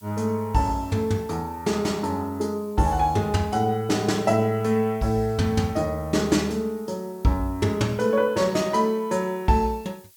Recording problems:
hiss; slope +4 dB per octave, SNR 27 dB

